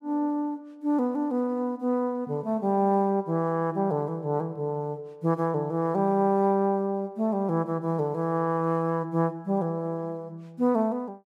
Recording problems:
none

